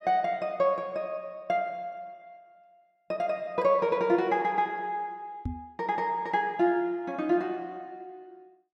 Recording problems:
microphone thump; at 5.5 s; peak -1 dB vs average level

